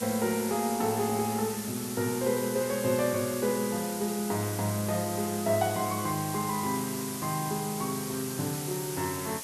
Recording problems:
hiss; slope 0 dB per octave, SNR 6 dB

